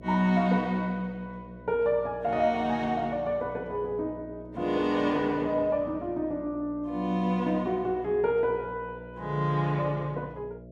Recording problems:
electrical hum; 60 Hz, harmonics up to 660 Hz, SNR 18 dB

